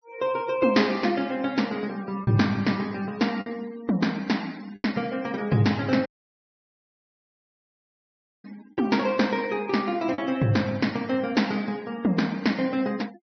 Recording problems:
treble cut off; nothing above 6.1 kHz
noise reduction artefacts; signal-to-artefact ratio 22 dB
packet loss; 1.6% of the sound replaced, filled with the last packet
audio cutting out; at 6 s for 2.5 s

